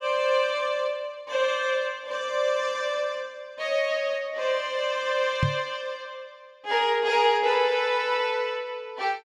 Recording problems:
knock on the microphone; at 5.5 s; peak +4 dB vs average level

